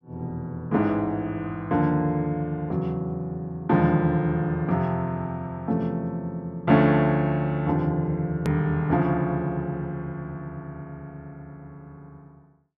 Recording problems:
click at an edit; at 8.5 s

